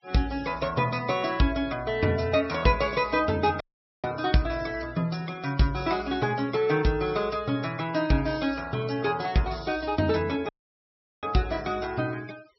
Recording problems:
treble cut off; nothing above 5.7 kHz
denoising artefacts; signal-to-artefact ratio 21 dB
audio cutting out; at 3.5 s and at 10 s for 0.5 s

